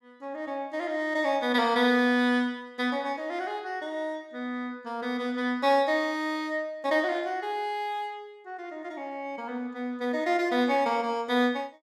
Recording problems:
none

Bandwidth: 14.5 kHz